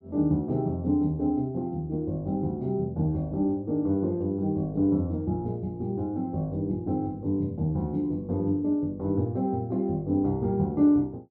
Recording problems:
none

